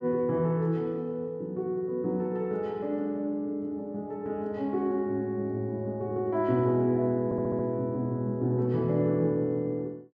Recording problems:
audio stuttering; at 7.5 s

